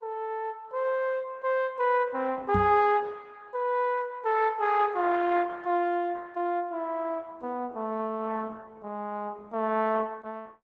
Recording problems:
codec artefacts; Opus, log-spectral distance 3 dB
microphone bump; at 2.5 s; peak +2 dB vs average level

